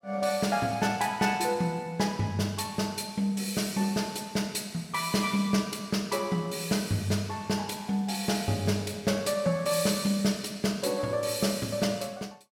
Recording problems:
none

